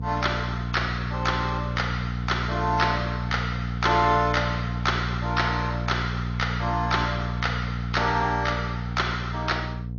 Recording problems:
lossy codec; MP2, then MP3, log-spectral distance 3 dB, nothing above 6.5 kHz
hum; 60 Hz, harmonics up to 480 Hz, SNR 4 dB

